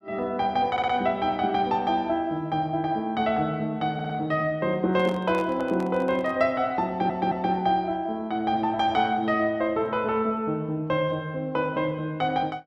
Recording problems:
stutter; at 0.5 s, at 4 s and at 7 s
handling noise; from 5 to 6.5 s; peak -8 dB vs average level

